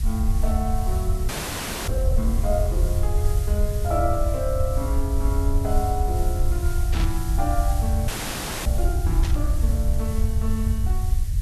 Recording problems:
hum; 50 Hz, harmonics up to 400 Hz, SNR 16 dB
background hiss; SNR 10 dB
rumble; below 78 Hz, SNR -5 dB
audio freezing; at 1.5 s for 0.5 s and at 8 s for 0.5 s
static burst; at 7 s and at 9 s; peak 0 dB vs average level

